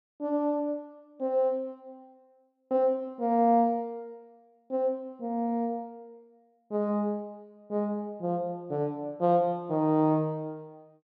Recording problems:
none

